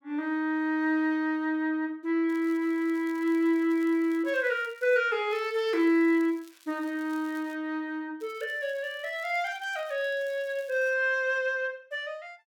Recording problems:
crackle; from 2.5 to 5 s, from 5.5 to 7.5 s and from 8 to 11 s; loose cable, SNR 28 dB

